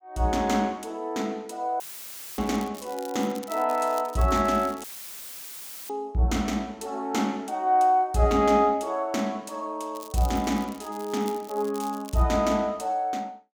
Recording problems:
audio cutting out; at 2 s for 0.5 s and at 5 s for 1 s; filled with static
crackle; from 2.5 to 5 s and from 10 to 12 s; loose cable, SNR 19 dB

